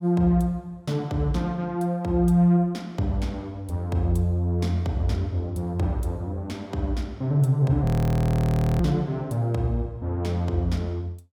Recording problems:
frozen audio; at 8 s for 1 s

